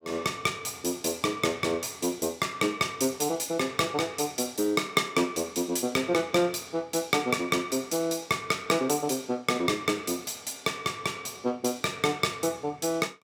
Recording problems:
none

